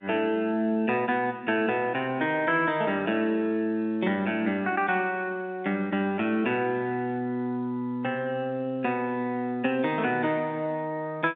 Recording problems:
telephone audio; 220 Hz to 3.7 kHz, G.711

